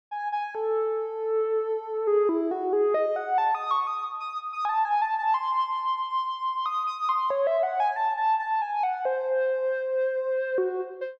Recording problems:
none

